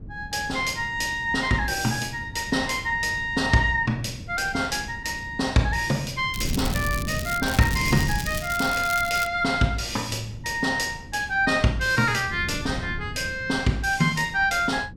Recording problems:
wind on the microphone; below 190 Hz, SNR 12 dB
crackle; from 6.5 to 9.5 s; loose cable, SNR 11 dB

